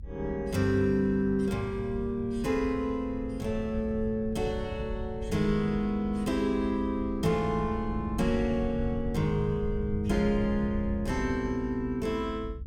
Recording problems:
rumble; below 96 Hz, SNR 10 dB

